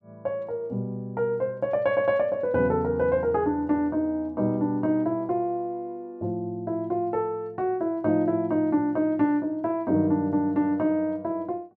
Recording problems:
none

